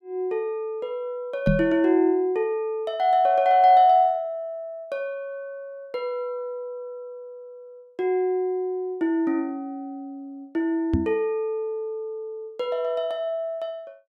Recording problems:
knock on the microphone; at 1.5 s and at 11 s; peak +6 dB vs average level

